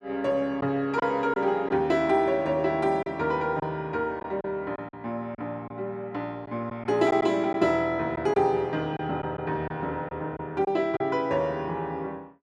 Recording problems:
packet loss; 4% of the sound replaced, filled with silence

